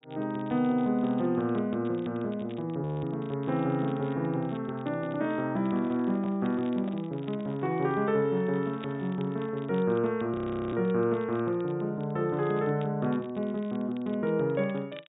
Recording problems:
treble cut off; nothing above 4 kHz
crackle; vinyl, SNR 27 dB
audio freezing; at 3 s and at 10 s
handling noise; from 5.5 to 9.5 s; peak -10 dB vs average level

